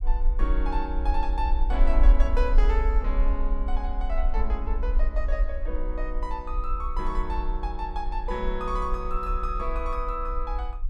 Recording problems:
rumble; below 44 Hz, strongest tone 20 Hz, SNR -4 dB

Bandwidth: 14 kHz